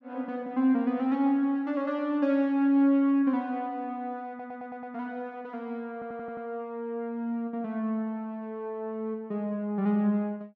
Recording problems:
stutter; at 4.5 s and at 6 s

